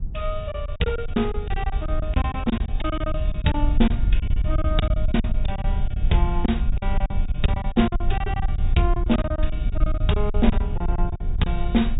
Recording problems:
low-pass filter; nothing above 4 kHz
low-frequency rumble; below 66 Hz, SNR 0 dB
packet loss; 17% of the sound replaced, filled with silence

